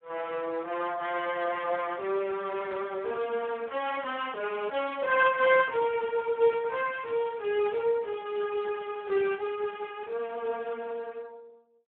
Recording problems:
telephone audio; 340 Hz to 3.5 kHz, Speex

